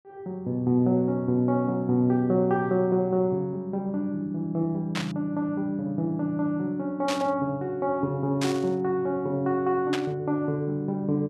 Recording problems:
burst of static; 4 times, first at 5 s; peak -1 dB vs average level

